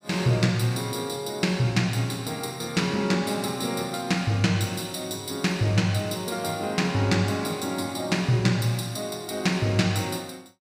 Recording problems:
none

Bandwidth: 15.5 kHz